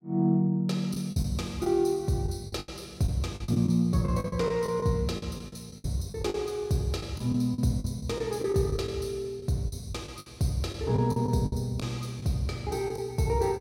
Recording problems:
packet loss; 11% of the sound replaced, filled with the last packet

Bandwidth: 16 kHz